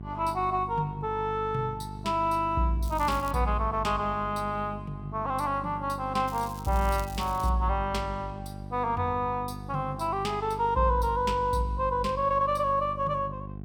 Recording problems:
hum; 50 Hz, harmonics up to 800 Hz, SNR 12 dB
crackle; at 3 s and from 6.5 to 7.5 s; loose cable, SNR 19 dB

